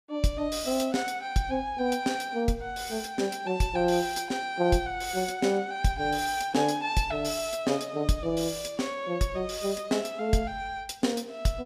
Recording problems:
none

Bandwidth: 15 kHz